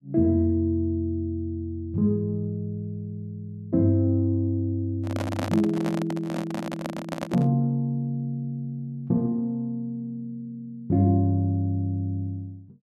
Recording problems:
handling noise; from 5 to 7.5 s; peak -1 dB vs average level

